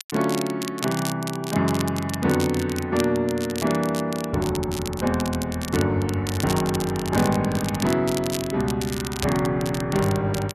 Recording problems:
crackle; vinyl, SNR 11 dB

